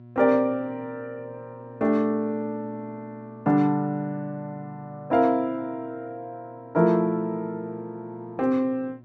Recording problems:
mains hum; 60 Hz, harmonics up to 960 Hz, SNR 22 dB

